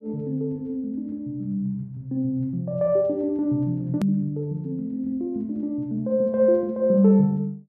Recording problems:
hard cut with a click; at 4 s

